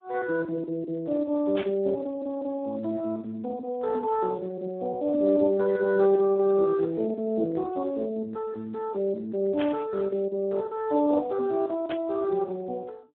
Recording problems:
phone line; 240 Hz to 2 kHz, Speex
static burst; at 1.5 s, at 9.5 s and at 12 s; peak -4 dB vs average level

